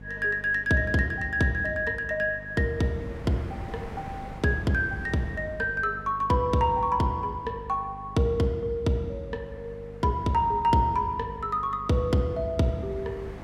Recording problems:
mains hum; 50 Hz, harmonics up to 500 Hz, SNR 18 dB
wind noise; below 910 Hz, SNR 21 dB

